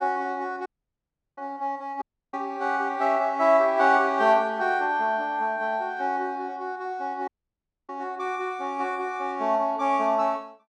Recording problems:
audio cutting out; at 0.5 s for 0.5 s, at 2 s and at 7.5 s for 0.5 s

